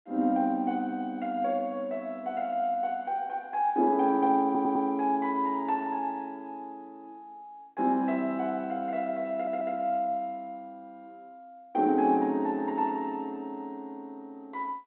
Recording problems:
telephone audio; 190 Hz to 3.4 kHz, G.726
stutter; at 4.5 s and at 9.5 s

